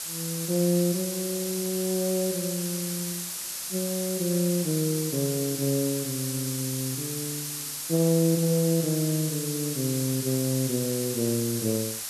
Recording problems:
hiss; slope +3 dB per octave, SNR 3 dB

